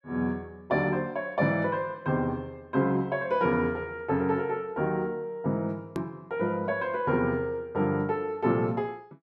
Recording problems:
hard cut with a click; at 6 s

